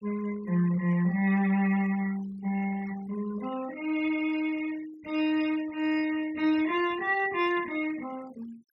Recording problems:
denoising artefacts; signal-to-artefact ratio 19 dB

